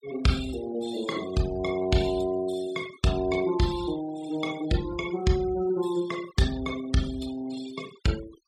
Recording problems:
noise reduction artefacts; signal-to-artefact ratio 16 dB

